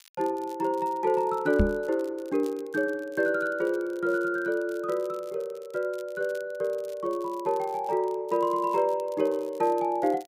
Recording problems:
crackle; vinyl, SNR 27 dB
knock on the microphone; at 1.5 s; peak +8 dB vs average level

